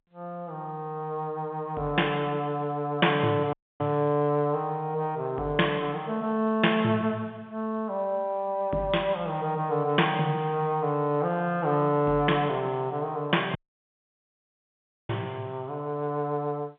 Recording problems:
telephone audio; 170 Hz to 3.5 kHz, G.711
dropout; at 3.5 s and at 14 s for 1.5 s

